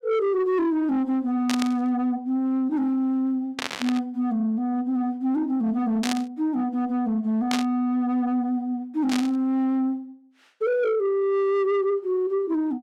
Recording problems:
distorted audio; soft clipping, signal-to-distortion ratio 10 dB
static burst; 5 times, first at 1.5 s; peak 0 dB vs average level

